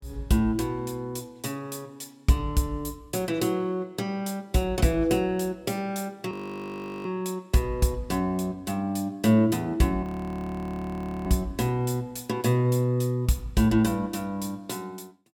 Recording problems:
frozen audio; at 6.5 s for 0.5 s and at 10 s for 1 s

